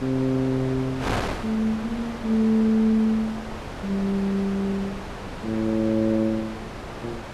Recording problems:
wind noise; below 1.4 kHz, SNR 10 dB

